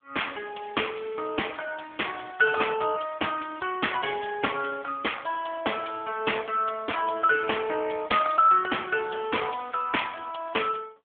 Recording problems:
telephone audio; 320 Hz to 3.4 kHz, AMR-NB

